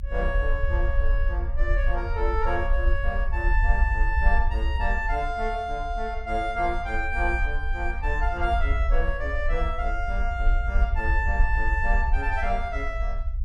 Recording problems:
rumble; below 56 Hz, SNR -1 dB

